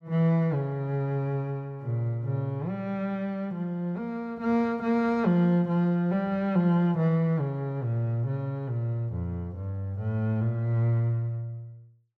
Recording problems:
none

